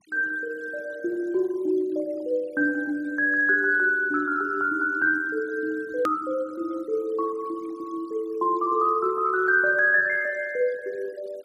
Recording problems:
noise reduction artefacts; signal-to-artefact ratio 27 dB
click at an edit; at 6 s

